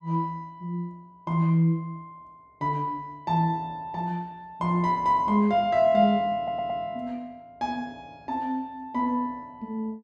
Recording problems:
audio stuttering; at 6.5 s

